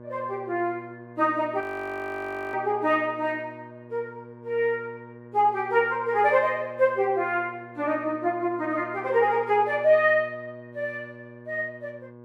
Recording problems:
electrical hum; 60 Hz, harmonics up to 1.6 kHz, SNR 20 dB
frozen audio; at 1.5 s for 1 s

